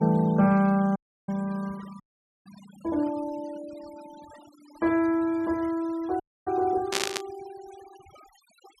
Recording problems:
denoising artefacts; signal-to-artefact ratio 25 dB
dropout; at 1 s, at 2 s and at 6 s
burst of static; at 7 s; peak +5 dB vs average level

